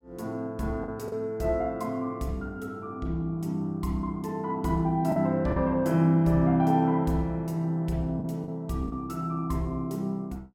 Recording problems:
packet loss; 3% of the sound replaced, filled with the last packet

